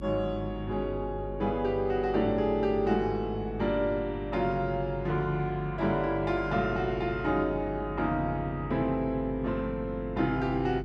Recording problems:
mains hum; 50 Hz, harmonics up to 400 Hz, SNR 11 dB

